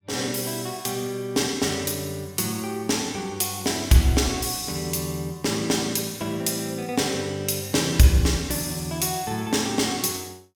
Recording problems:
none

